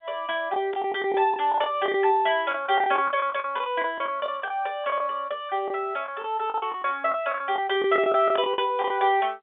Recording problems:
phone line; 260 Hz to 3.6 kHz, G.711
packet loss; 12% of the sound replaced, filled with the last packet

